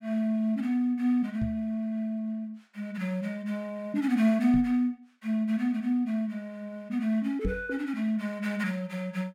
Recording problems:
microphone thump; at 1.5 s, at 4.5 s and at 7.5 s; peak +1 dB vs average level

